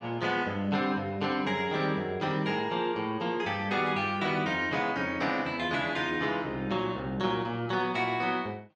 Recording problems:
none

